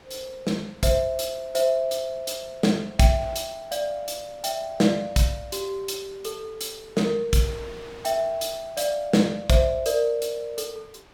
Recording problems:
wind on the microphone; below 2.6 kHz, SNR 24 dB

